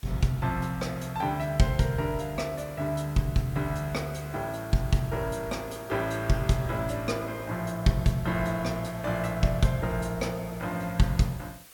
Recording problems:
background hiss; slope 0 dB per octave, SNR 20 dB

